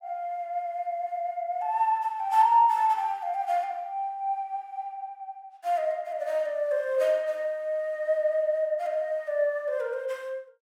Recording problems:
none

